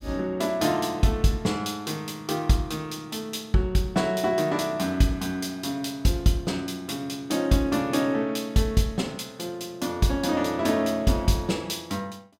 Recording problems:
none

